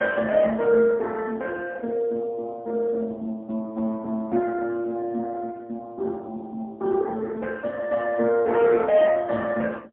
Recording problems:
phone line; 150 Hz to 2.6 kHz, AMR-NB, then MP3

